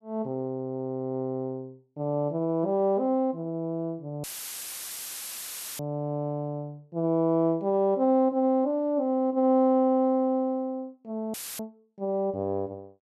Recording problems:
dropout; at 4 s for 1.5 s and at 11 s; filled with static

